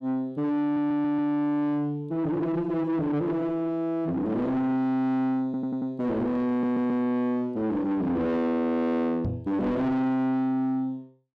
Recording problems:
distortion; soft clipping, signal-to-distortion ratio 10 dB
audio stuttering; at 0.5 s, at 5.5 s and at 6.5 s
microphone bump; at 9.5 s; peak 0 dB vs average level

